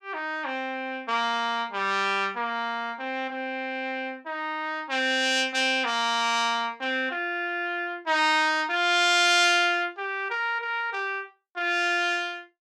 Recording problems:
none

